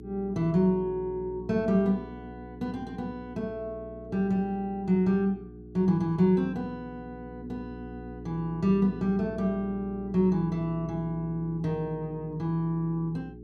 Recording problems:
electrical hum; 60 Hz, harmonics up to 420 Hz, SNR 14 dB

